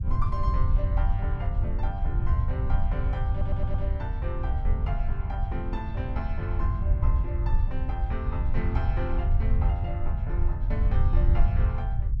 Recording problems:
low-frequency rumble; below 82 Hz, SNR -9 dB
stutter; at 3.5 s

